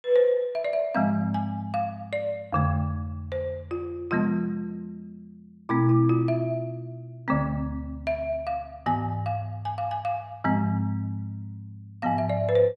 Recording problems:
none

